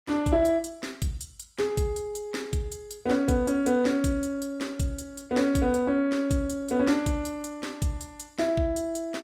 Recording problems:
codec artefacts; Opus, log-spectral distance 3 dB, nothing above 19 kHz

